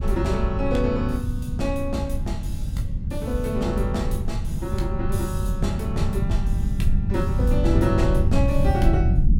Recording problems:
low-frequency rumble; below 120 Hz, SNR -2 dB

